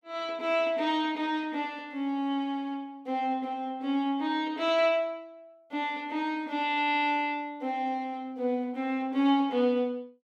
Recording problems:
none

